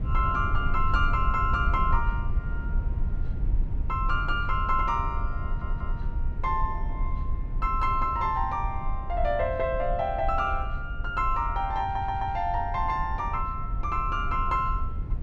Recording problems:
rumble; below 68 Hz, SNR 4 dB
audio stuttering; at 5.5 s and at 12 s

